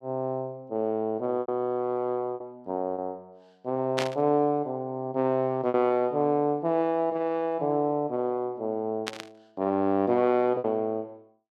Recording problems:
packet loss; 3% of the sound replaced, filled with repeated pitch periods
burst of static; at 4 s and at 9 s; peak +2 dB vs average level

